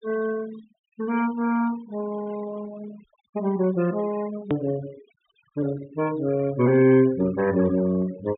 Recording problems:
treble missing; nothing above 4 kHz
denoising artefacts; signal-to-artefact ratio 18 dB
hard cut with a click; at 4.5 s

